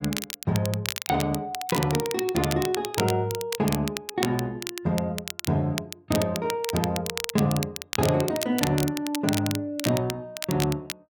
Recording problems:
crackling; vinyl, SNR 6 dB

